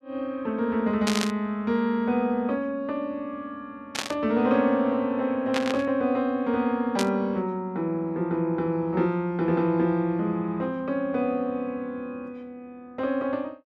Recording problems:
static burst; 4 times, first at 1 s; peak +2 dB vs average level

